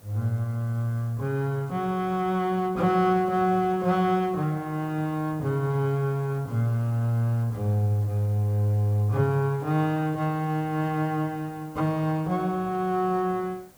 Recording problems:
background hiss; slope -5 dB per octave, SNR 27 dB

